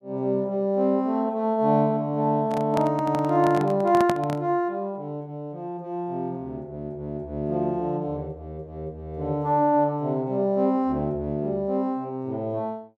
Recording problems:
handling noise; from 2.5 to 4.5 s; peak +2 dB vs average level

